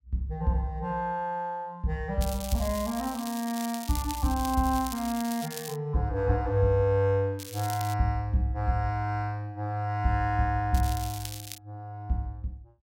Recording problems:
crackle; from 2 to 6 s, at 7.5 s and at 11 s; loose cable, SNR 11 dB

